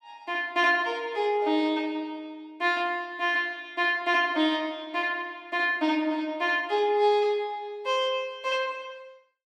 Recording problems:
none

